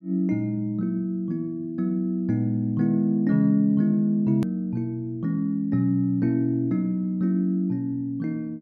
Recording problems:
edit click; at 4.5 s

